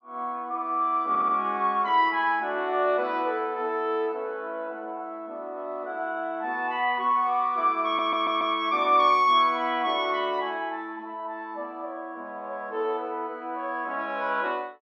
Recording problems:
stutter; at 1 s and at 8 s

